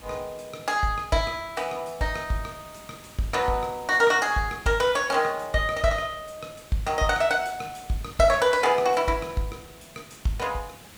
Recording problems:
background hiss; slope -3 dB per octave, SNR 22 dB

